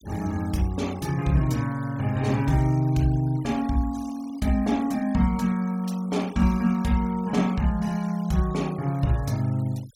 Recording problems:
noise reduction artefacts; signal-to-artefact ratio 22 dB

